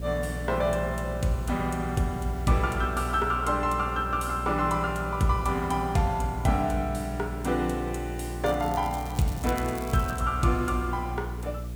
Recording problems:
hum; 60 Hz, harmonics up to 540 Hz, SNR 8 dB
hiss; slope -3 dB per octave, SNR 24 dB
crackle; from 8.5 to 10 s; loose cable, SNR 17 dB

